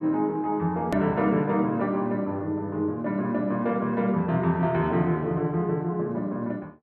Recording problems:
click at an edit; at 1 s

